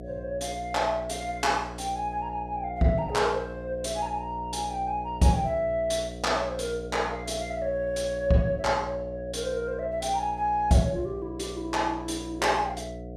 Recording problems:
electrical hum; 60 Hz, harmonics up to 720 Hz, SNR 11 dB

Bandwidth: 14.5 kHz